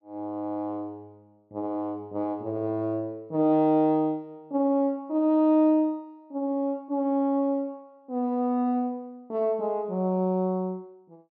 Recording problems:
none

